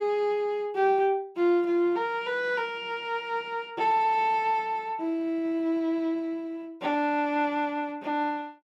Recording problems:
none

